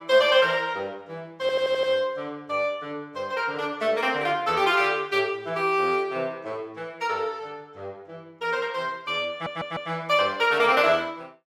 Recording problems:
stutter; at 1.5 s and at 9.5 s

